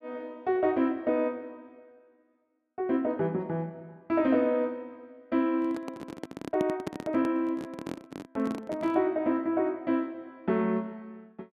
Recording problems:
microphone handling noise; from 5.5 to 9 s; peak 0 dB vs average level

